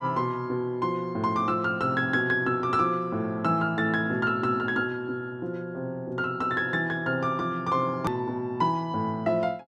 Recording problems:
click at an edit; at 8 s

